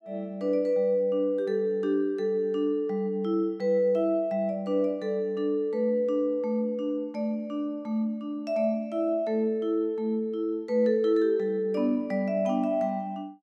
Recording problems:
none

